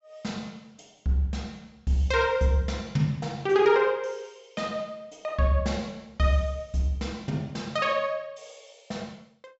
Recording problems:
treble missing; nothing above 7.7 kHz

